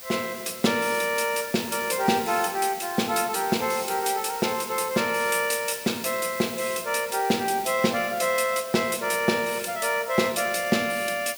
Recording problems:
background hiss; slope +1 dB per octave, SNR 12 dB

